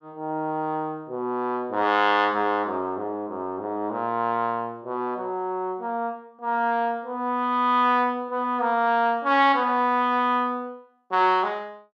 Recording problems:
none

